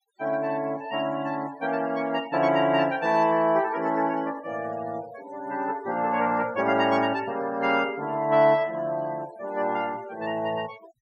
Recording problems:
denoising artefacts; signal-to-artefact ratio 20 dB

